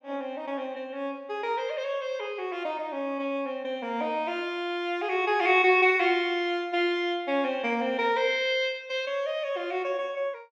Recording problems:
none

